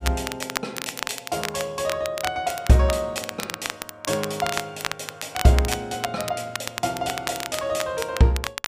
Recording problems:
crackle; vinyl, SNR 7 dB

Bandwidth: 15 kHz